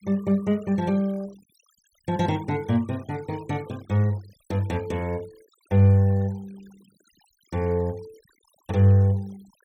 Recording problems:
noise reduction artefacts; signal-to-artefact ratio 27 dB

